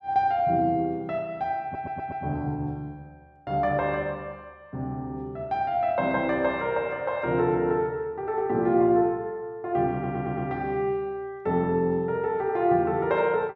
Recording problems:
audio stuttering; at 1.5 s and at 10 s

